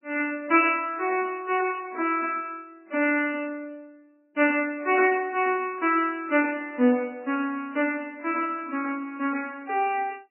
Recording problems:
codec artefacts; MP3, log-spectral distance 4 dB, nothing above 2.4 kHz

